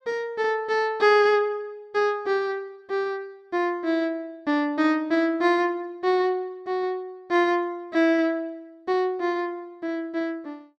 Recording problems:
none

